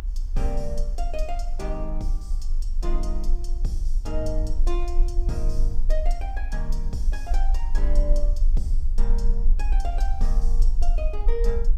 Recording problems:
background hiss; slope -6 dB per octave, SNR 25 dB
rumble; below 36 Hz, strongest tone 24 Hz, SNR -8 dB

